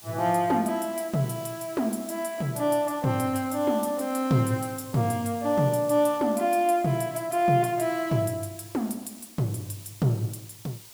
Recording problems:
hiss; SNR 19 dB

